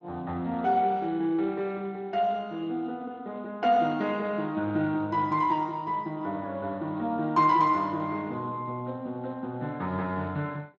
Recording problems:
lossy codec; Speex, log-spectral distance 2 dB, nothing above 7.3 kHz

